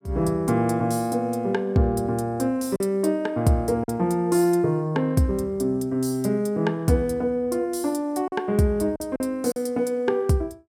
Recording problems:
lost packets; 2% of the sound replaced, filled with silence

